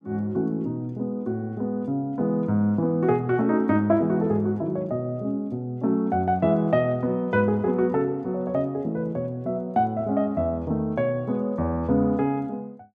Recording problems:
none

